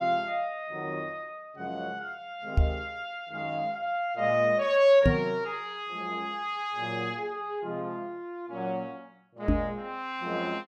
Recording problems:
knock on the microphone; at 2.5 s, at 5 s and at 9.5 s; peak +9 dB vs average level

